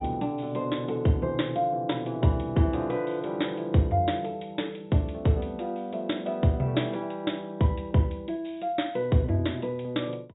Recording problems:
low-pass filter; nothing above 4 kHz

